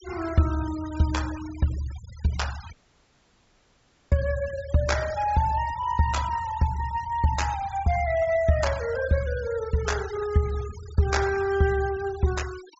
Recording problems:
treble cut off; nothing above 8 kHz
noise reduction artefacts; signal-to-artefact ratio 17 dB
audio cutting out; at 2.5 s for 1.5 s

